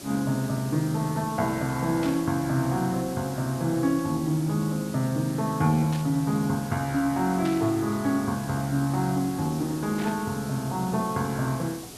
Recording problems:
hiss; SNR 14 dB
burst of static; 4 times, first at 2 s; peak -8 dB vs average level

